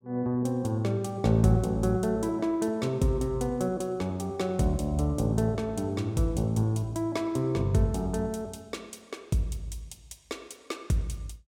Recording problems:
none

